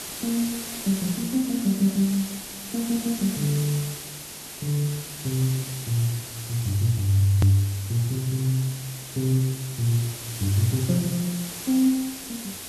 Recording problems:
background hiss; SNR 9 dB
hard cut with a click; at 7.5 s

